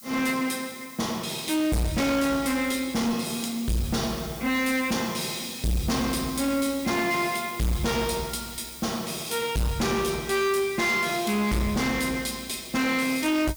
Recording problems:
distortion; hard clipping, uneven, signal-to-distortion ratio 7 dB
hiss; SNR 16 dB

